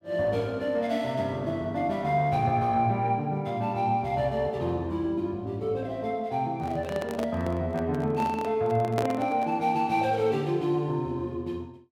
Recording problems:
handling noise; from 6.5 to 9.5 s; peak +1 dB vs average level

